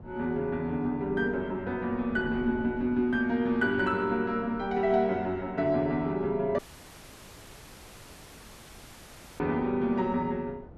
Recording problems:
wind on the microphone; below 370 Hz, SNR 18 dB
dropout; at 6.5 s for 3 s

